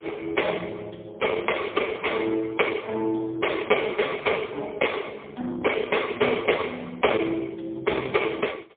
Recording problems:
phone line; 190 Hz to 3.4 kHz, AMR-NB, then MP3

